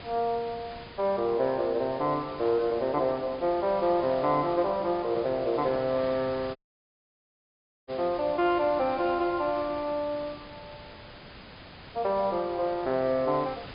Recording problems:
low-pass filter; nothing above 5 kHz
hiss; SNR 17 dB
audio cutting out; at 6.5 s for 1.5 s

